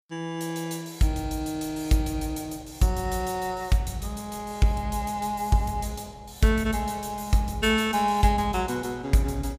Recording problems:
none

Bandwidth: 15.5 kHz